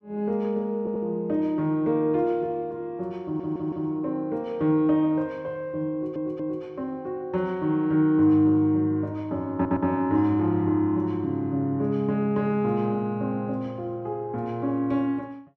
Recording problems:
stutter; 4 times, first at 1 s

